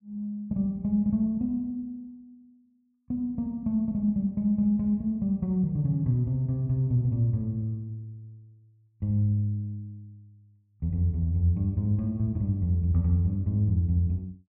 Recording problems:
none

